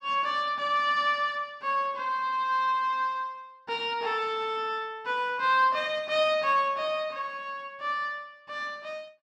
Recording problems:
none

